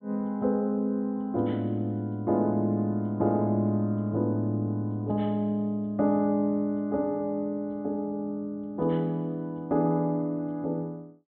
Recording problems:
treble missing; nothing above 4 kHz

